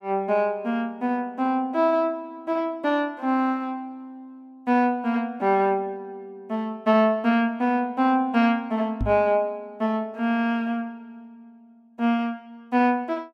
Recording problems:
knock on the microphone; at 9 s; peak 0 dB vs average level

